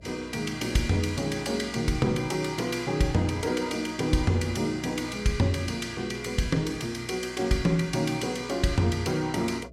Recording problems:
electrical hum; 60 Hz, harmonics up to 660 Hz, SNR 23 dB

